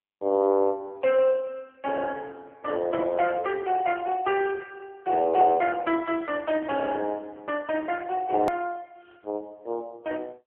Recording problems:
phone line; 320 Hz to 3.2 kHz, AMR-NB
hard cut with a click; at 8.5 s

